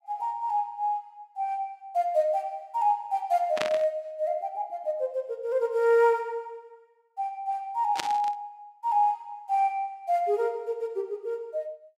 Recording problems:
burst of static; at 3.5 s and at 8 s; peak +3 dB vs average level

